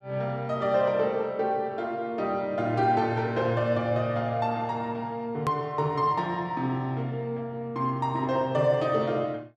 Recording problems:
edit click; at 5.5 s

